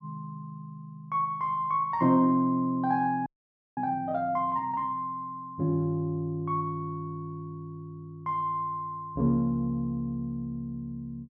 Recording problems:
frozen audio; at 3.5 s for 0.5 s

